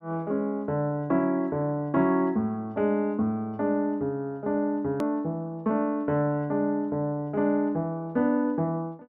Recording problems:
edit click; at 5 s

